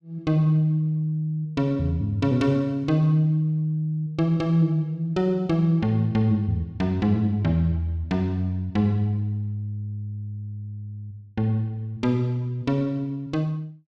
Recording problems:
none

